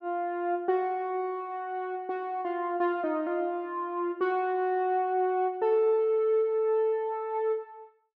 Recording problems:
low-pass filter; nothing above 8 kHz

